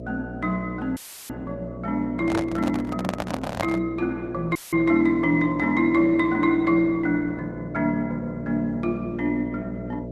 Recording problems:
lossy compression; Opus, log-spectral distance 2 dB, nothing above 10.7 kHz
electrical hum; 60 Hz, harmonics up to 660 Hz, SNR 11 dB
audio cutting out; at 1 s and at 4.5 s; filled with static
handling noise; from 2 to 4 s; peak +2 dB vs average level

